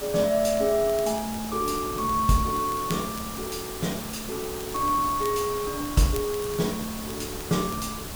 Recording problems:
hiss; slope -3 dB per octave, SNR 9 dB
wind noise; below 310 Hz, SNR 15 dB
crackle; vinyl, SNR 21 dB

